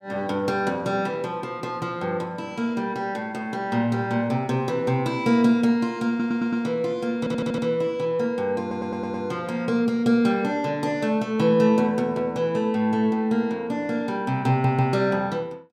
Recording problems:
stutter; 4 times, first at 6 s

